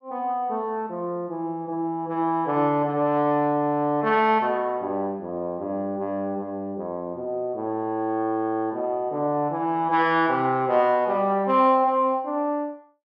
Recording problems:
none

